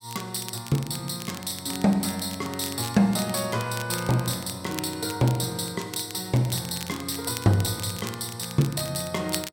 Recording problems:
crackling; vinyl, SNR 13 dB

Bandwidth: 16.5 kHz